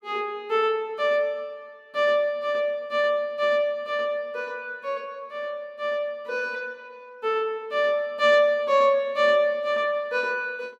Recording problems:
none

